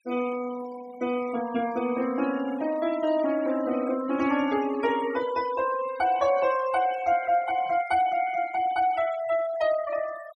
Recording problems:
noise reduction artefacts; signal-to-artefact ratio 16 dB

